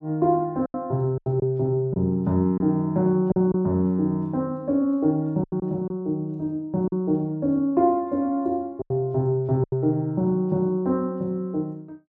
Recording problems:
lost packets; 5% of the sound replaced, filled with silence

